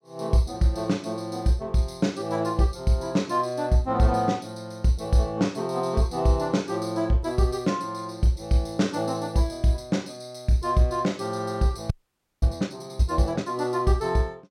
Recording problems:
audio freezing; at 12 s for 0.5 s

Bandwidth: 16 kHz